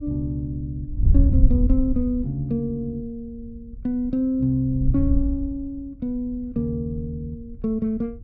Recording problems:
wind noise; below 76 Hz, SNR -2 dB

